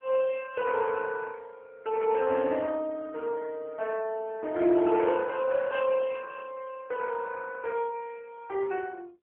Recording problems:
telephone audio; 280 Hz to 3.5 kHz, AMR-NB

